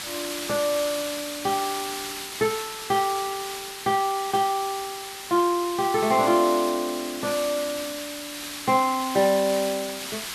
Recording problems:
hiss; SNR 8 dB

